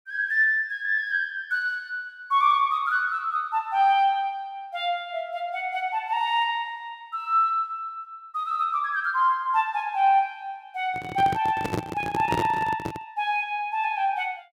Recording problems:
microphone handling noise; from 11 to 13 s; peak +2 dB vs average level

